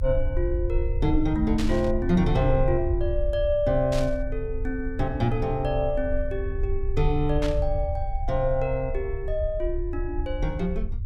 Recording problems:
rumble; below 64 Hz, strongest tone 22 Hz, SNR 4 dB
static burst; at 1.5 s, at 4 s and at 7.5 s; peak -4 dB vs average level

